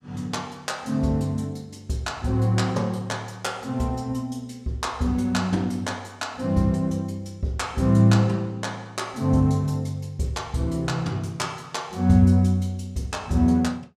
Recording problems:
none

